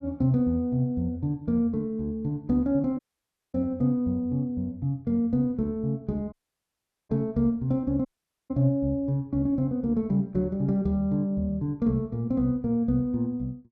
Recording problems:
dropout; at 3 s for 0.5 s, at 6.5 s for 1 s and at 8 s

